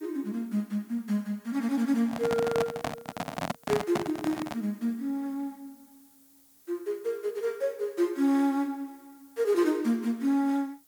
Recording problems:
hiss; SNR 28 dB
microphone handling noise; from 2 to 4.5 s; peak +3 dB vs average level

